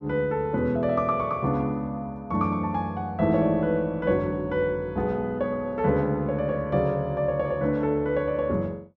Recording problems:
none

